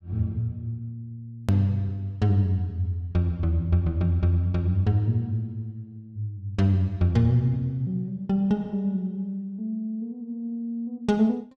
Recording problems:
edit click; at 1.5 s

